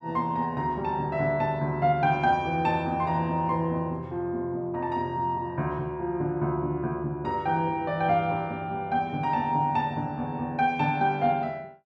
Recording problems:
none

